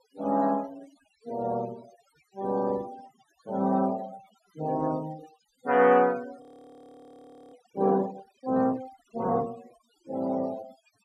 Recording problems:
denoising artefacts; signal-to-artefact ratio 22 dB
frozen audio; at 6.5 s for 1 s

